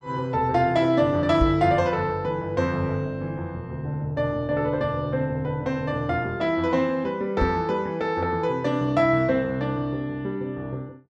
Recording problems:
microphone thump; at 1.5 s and at 7.5 s; peak +3 dB vs average level

